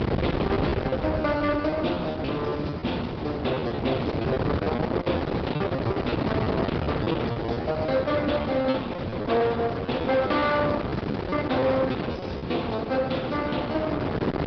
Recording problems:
low-pass filter; nothing above 5.2 kHz
lossy codec; Opus, log-spectral distance 3 dB
distorted audio; soft clipping, signal-to-distortion ratio 11 dB
wind on the microphone; below 640 Hz, SNR 2 dB
packet loss; 10% of the sound replaced, filled with repeated pitch periods

